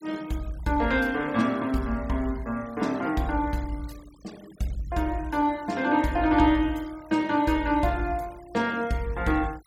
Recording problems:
noise reduction artefacts; signal-to-artefact ratio 24 dB

